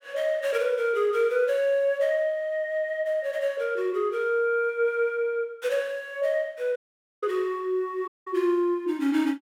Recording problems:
audio cutting out; at 7 s and at 8 s

